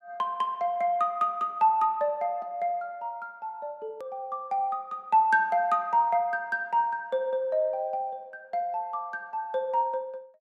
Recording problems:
click at an edit; at 4 s

